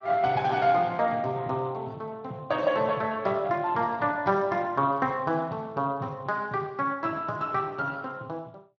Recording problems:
codec artefacts; Speex, log-spectral distance 3 dB

